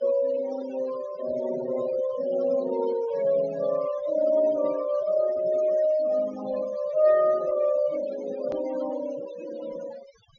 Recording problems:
low-pass filter; nothing above 6.8 kHz
noise reduction artefacts; signal-to-artefact ratio 15 dB
hard cut with a click; at 8.5 s

